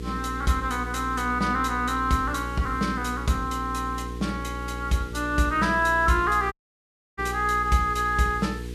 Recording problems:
hum; 60 Hz, harmonics up to 480 Hz, SNR 10 dB
background hiss; SNR 24 dB
dropout; at 6.5 s for 0.5 s

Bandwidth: 14 kHz